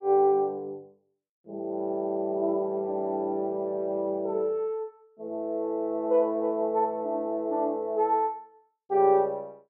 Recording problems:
none

